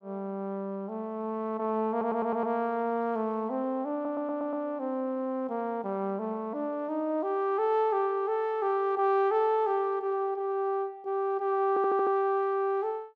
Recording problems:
audio stuttering; at 2 s, at 4 s and at 12 s

